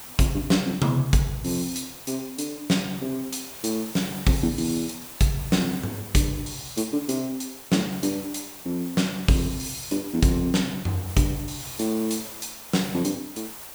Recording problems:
background hiss; SNR 13 dB

